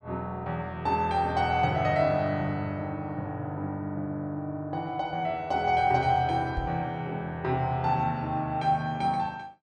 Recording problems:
knock on the microphone; at 6.5 s; peak -2 dB vs average level

